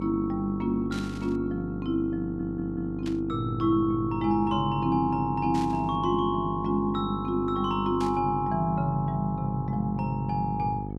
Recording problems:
electrical hum; 50 Hz, harmonics up to 900 Hz, SNR 8 dB
burst of static; 4 times, first at 1 s; peak -9 dB vs average level
audio stuttering; at 2 s

